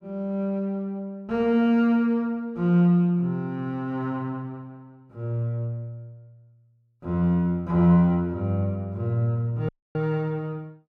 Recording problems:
dropout; at 9.5 s

